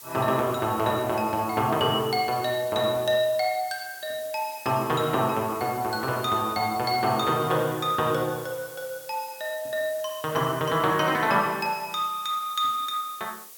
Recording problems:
background hiss; SNR 16 dB

